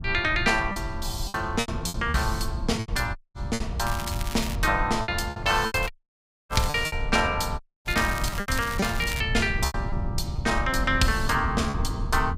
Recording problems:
low-frequency rumble; below 100 Hz, SNR 7 dB
wind on the microphone; below 220 Hz, SNR 12 dB
lost packets; 8% of the sound replaced, filled with repeated pitch periods
dropout; at 3 s, at 6 s for 0.5 s and at 7.5 s
crackle; at 4 s, at 6 s and from 8 to 9 s; loose cable, SNR 11 dB

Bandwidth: 15.5 kHz